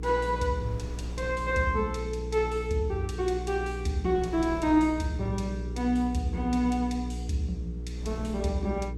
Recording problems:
hum; 60 Hz, harmonics up to 480 Hz, SNR 7 dB
wind on the microphone; below 340 Hz, SNR 20 dB

